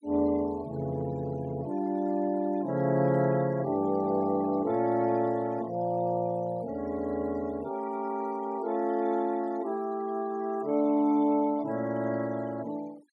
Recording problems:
denoising artefacts; signal-to-artefact ratio 23 dB

